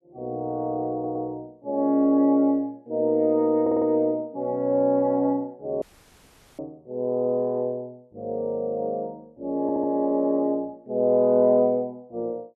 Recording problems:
stutter; at 1 s, at 3.5 s and at 9.5 s
audio cutting out; at 6 s for 1 s

